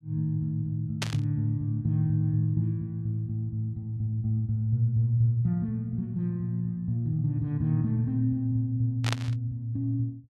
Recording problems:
static burst; at 1 s and at 9 s; peak +1 dB vs average level

